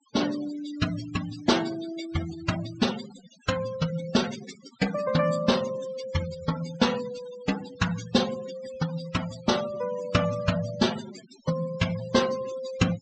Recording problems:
low-pass filter; nothing above 8 kHz
noise reduction artefacts; signal-to-artefact ratio 12 dB

